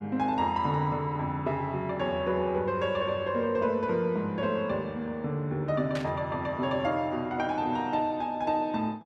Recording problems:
static burst; at 6 s; peak -4 dB vs average level

